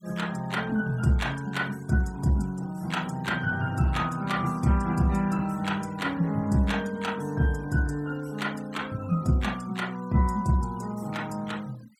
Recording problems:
noise reduction artefacts; signal-to-artefact ratio 23 dB

